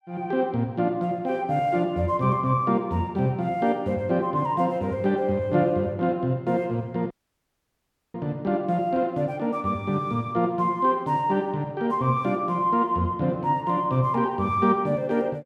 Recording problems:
audio cutting out; at 7 s for 1 s

